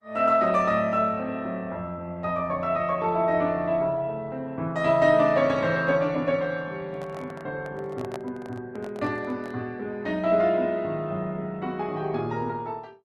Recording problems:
lossy compression; Opus, log-spectral distance 2 dB
handling noise; from 7 to 9.5 s; peak -5 dB vs average level

